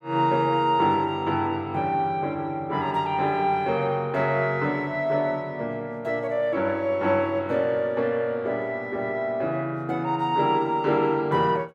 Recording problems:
none

